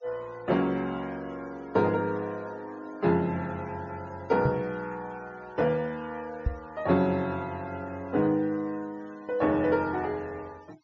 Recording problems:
treble missing; nothing above 7.2 kHz
denoising artefacts; signal-to-artefact ratio 25 dB
microphone thump; at 4.5 s and at 6.5 s; peak +5 dB vs average level

